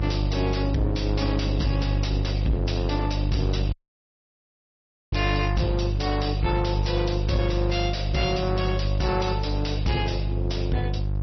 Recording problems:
lossy compression; MP3, log-spectral distance 5 dB, nothing above 5.8 kHz
distorted audio; soft clipping, signal-to-distortion ratio 11 dB
hum; 50 Hz, harmonics up to 550 Hz, SNR 0 dB
dropout; at 3.5 s for 1.5 s

